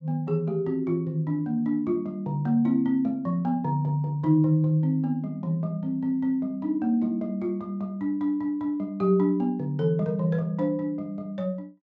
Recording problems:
treble cut off; nothing above 7.8 kHz

